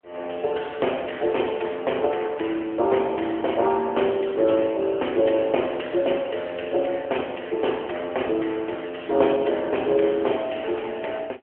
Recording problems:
telephone audio; 280 Hz to 3.3 kHz, AMR-NB

